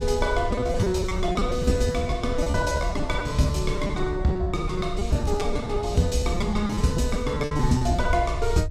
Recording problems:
rumble; below 78 Hz, SNR 6 dB
packet loss; 17% of the sound replaced, filled with repeated pitch periods

